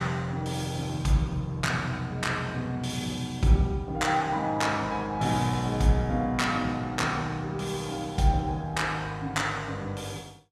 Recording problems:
none

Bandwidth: 14 kHz